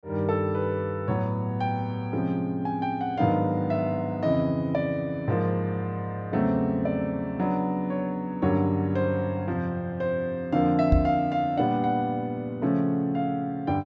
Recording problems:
treble missing; nothing above 7.9 kHz
knock on the microphone; at 11 s; peak +7 dB vs average level

